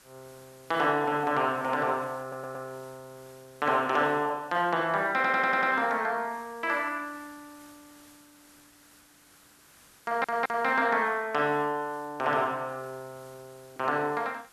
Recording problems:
background hiss; SNR 27 dB
stutter; at 2 s, at 5 s and at 10 s

